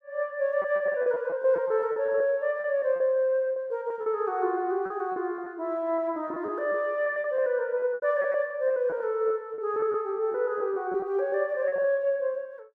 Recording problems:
packet loss; 12% of the sound replaced, filled with repeated pitch periods

